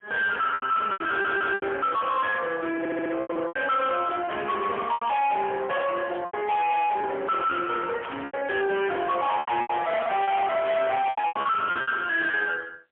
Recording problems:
phone line; 280 Hz to 3.4 kHz, AMR-NB, then MP3
distorted audio; soft clipping, signal-to-distortion ratio 7 dB
packet loss; 11% of the sound replaced, filled with repeated pitch periods
stutter; at 1 s and at 3 s
static burst; at 5 s, at 8 s and at 11 s; peak -9 dB vs average level

